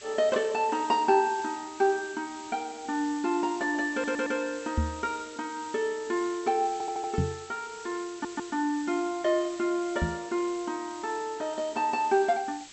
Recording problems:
treble missing; nothing above 8 kHz
background hiss; SNR 16 dB
audio stuttering; at 4 s, at 6.5 s and at 8 s
microphone thump; at 5 s, at 7 s and at 10 s; peak +5 dB vs average level

